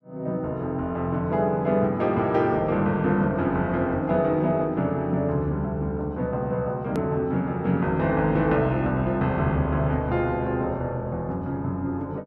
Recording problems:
hard cut with a click; at 7 s

